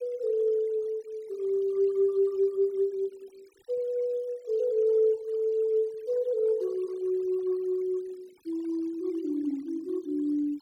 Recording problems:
noise reduction artefacts; signal-to-artefact ratio 28 dB

